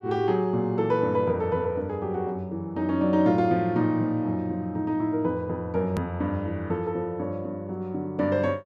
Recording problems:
edit click; at 6 s

